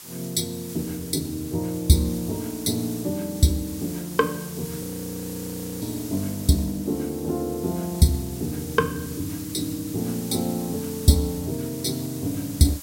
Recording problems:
background hiss; SNR 12 dB
audio freezing; at 5 s for 1 s

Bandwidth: 16 kHz